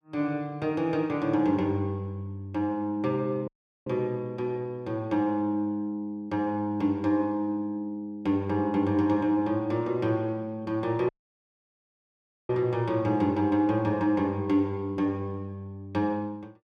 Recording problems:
dropout; at 3.5 s and at 11 s for 1.5 s

